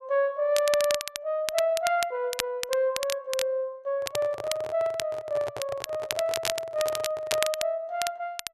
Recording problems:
crackle; vinyl, SNR 6 dB
handling noise; from 4 to 7.5 s; peak -4 dB vs average level

